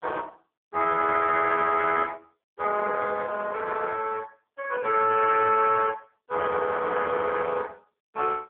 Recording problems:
phone line; 370 Hz to 2.6 kHz, AMR-NB

